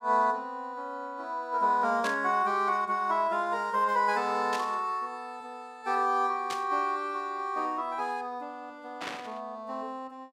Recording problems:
burst of static; 4 times, first at 2 s; peak -3 dB vs average level

